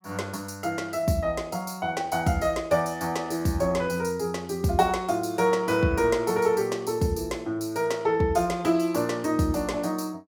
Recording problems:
none

